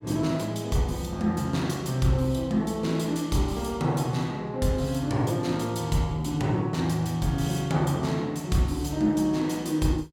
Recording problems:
none

